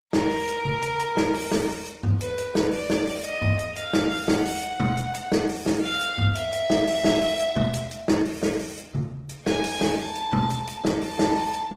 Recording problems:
lossy codec; Opus, log-spectral distance 5 dB

